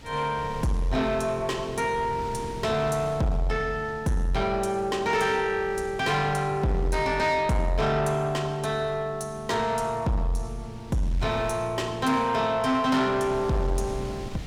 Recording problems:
distortion; soft clipping, signal-to-distortion ratio 11 dB
wind on the microphone; below 450 Hz, SNR 16 dB

